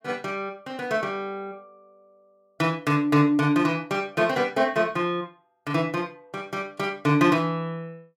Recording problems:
none

